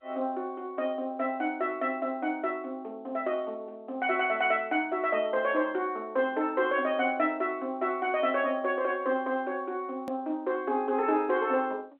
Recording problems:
phone line; 240 Hz to 3.3 kHz, G.711
edit click; at 10 s

